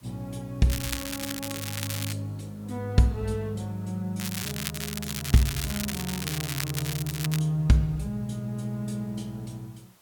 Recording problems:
background hiss; slope -2 dB per octave, SNR 28 dB
crackling; from 0.5 to 2 s and from 4 to 7.5 s; loose cable, SNR 4 dB

